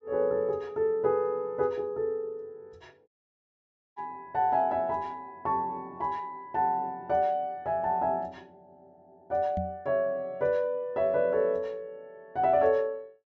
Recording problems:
treble cut off; nothing above 8 kHz
dropout; at 3 s for 1 s
microphone thump; at 9.5 s; peak -2 dB vs average level

